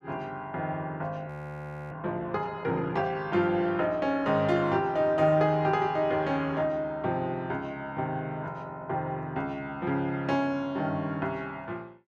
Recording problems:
frozen audio; at 1.5 s for 0.5 s

